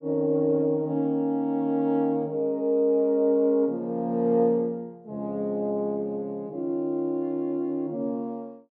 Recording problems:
none

